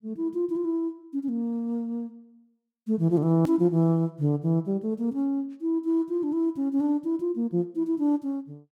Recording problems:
click at an edit; at 3.5 s

